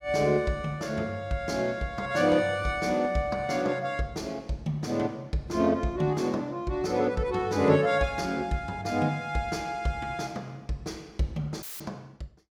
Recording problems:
audio cutting out; at 12 s; filled with static

